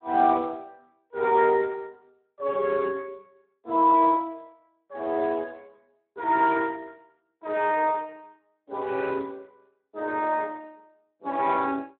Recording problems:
telephone audio; 260 Hz to 2.8 kHz, Speex

